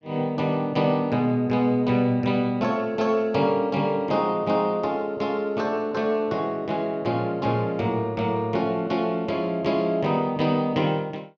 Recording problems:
none

